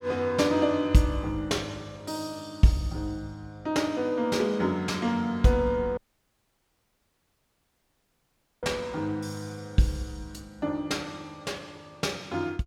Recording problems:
audio cutting out; at 6 s for 2.5 s

